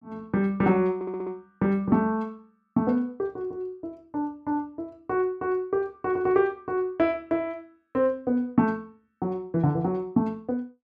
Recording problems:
audio stuttering; at 1 s

